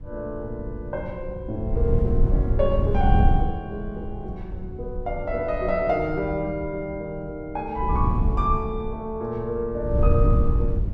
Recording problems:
wind on the microphone; below 96 Hz, SNR -1 dB

